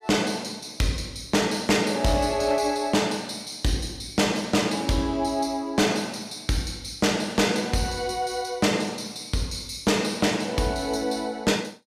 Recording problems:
distortion; hard clipping, signal-to-distortion ratio 10 dB

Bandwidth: 15 kHz